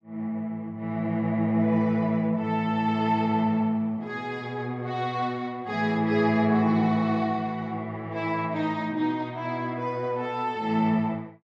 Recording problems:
none

